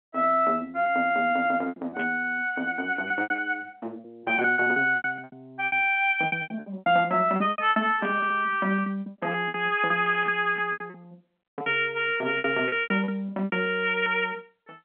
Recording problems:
phone line; 220 Hz to 3.5 kHz, G.711
packet loss; 16% of the sound replaced, filled with repeated pitch periods
burst of static; at 2 s, at 8 s and at 10 s; peak -12 dB vs average level

